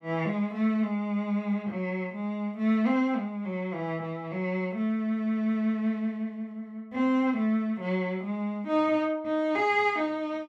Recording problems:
none

